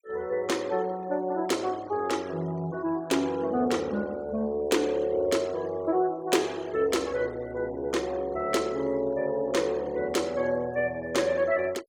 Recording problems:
noise reduction artefacts; signal-to-artefact ratio 22 dB

